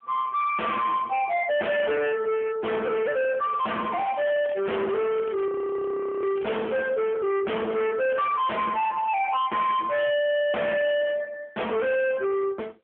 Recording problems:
telephone audio; 300 Hz to 3.2 kHz, AMR-NB
distorted audio; hard clipping, signal-to-distortion ratio 5 dB
crackle; at 0.5 s, from 3.5 to 7 s and at 8.5 s; loose cable, SNR 21 dB
audio freezing; at 5.5 s for 1 s

